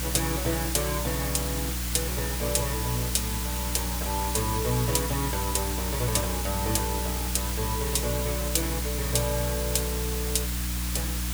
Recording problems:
electrical hum; 60 Hz, harmonics up to 300 Hz, SNR 3 dB
background hiss; slope 0 dB per octave, SNR 2 dB

